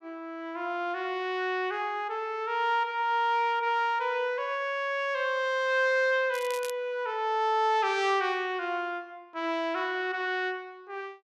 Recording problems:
crackling; at 6.5 s; loose cable, SNR 15 dB

